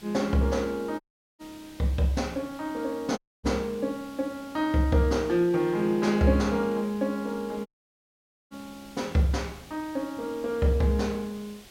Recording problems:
background hiss; SNR 22 dB
dropout; at 1 s, at 3 s and at 7.5 s for 1 s

